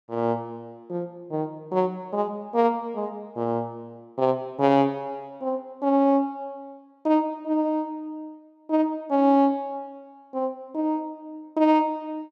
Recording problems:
none

